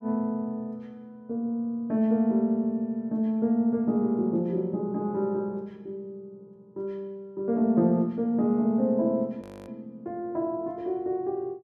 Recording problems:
frozen audio; at 9.5 s

